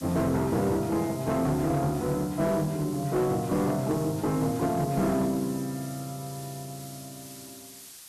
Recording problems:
distortion; hard clipping, uneven, signal-to-distortion ratio 11 dB
hiss; slope +2 dB per octave, SNR 16 dB

